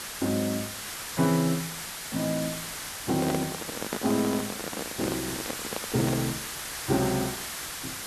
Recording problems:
hiss; slope 0 dB per octave, SNR 5 dB
microphone handling noise; from 3 to 6.5 s; peak +1 dB vs average level

